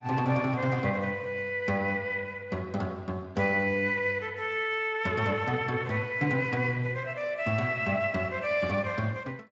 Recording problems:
lossy codec; Opus, then Speex, log-spectral distance 3 dB

